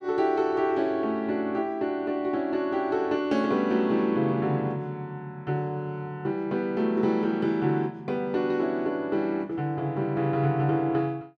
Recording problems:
none

